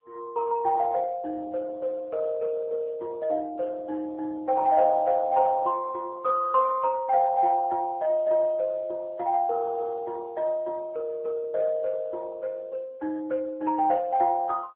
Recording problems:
phone line; 320 Hz to 2.1 kHz, AMR-NB

